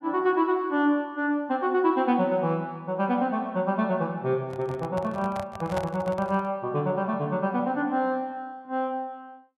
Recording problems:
microphone handling noise; from 4.5 to 6.5 s; peak -2 dB vs average level

